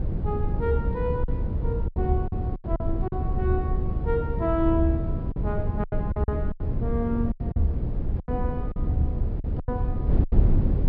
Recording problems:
treble missing; nothing above 5.5 kHz
rumble; below 120 Hz, SNR 13 dB
wind noise; below 120 Hz, SNR -2 dB
lost packets; 10% of the sound replaced, filled with silence

